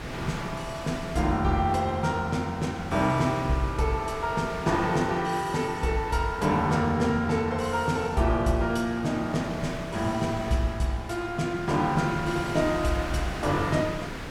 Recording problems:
wind noise; below 1.9 kHz, SNR 12 dB

